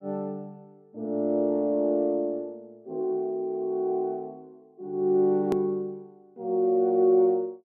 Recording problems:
click at an edit; at 5.5 s

